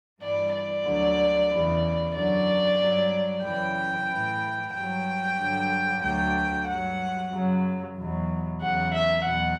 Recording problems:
none

